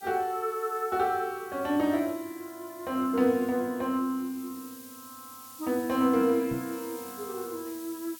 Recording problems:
hiss; SNR 17 dB
microphone bump; at 6.5 s; peak -4 dB vs average level

